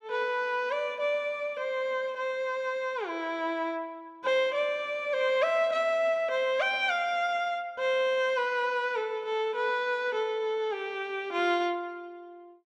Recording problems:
none

